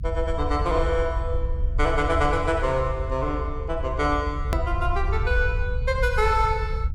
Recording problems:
rumble; below 76 Hz, SNR 3 dB
click at an edit; at 4.5 s

